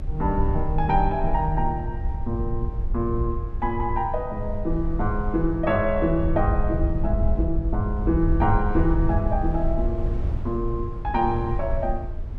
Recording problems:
low-frequency rumble; below 68 Hz, strongest tone 20 Hz, SNR 6 dB
wind on the microphone; below 76 Hz, SNR 4 dB

